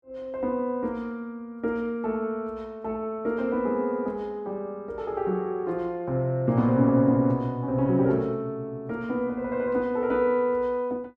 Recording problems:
none

